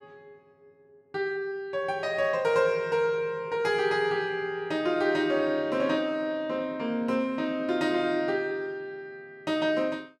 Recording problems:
none

